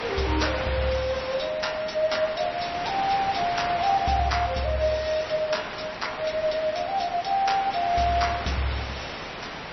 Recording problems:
lossy codec; MP3, log-spectral distance 8 dB, nothing above 5.8 kHz
background hiss; SNR 8 dB

